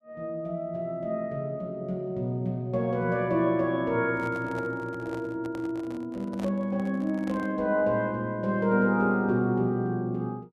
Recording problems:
handling noise; from 4 to 7.5 s; peak -8 dB vs average level

